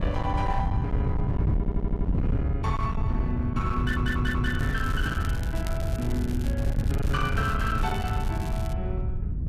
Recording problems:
distorted audio; hard clipping, signal-to-distortion ratio 9 dB
wind noise; below 130 Hz, SNR -3 dB
audio stuttering; at 1.5 s and at 4 s
crackle; from 4 to 9 s; loose cable, SNR 15 dB

